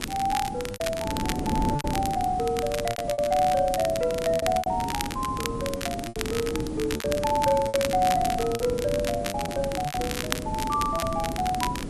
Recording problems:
lossy codec; MP3, log-spectral distance 2 dB
hiss; slope -2 dB per octave, SNR 22 dB
wind on the microphone; below 340 Hz, SNR 7 dB
crackling; vinyl, SNR 8 dB
lost packets; 10% of the sound replaced, filled with repeated pitch periods

